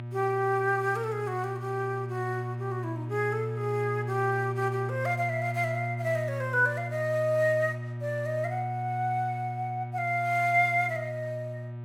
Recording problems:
electrical hum; 60 Hz, harmonics up to 960 Hz, SNR 7 dB

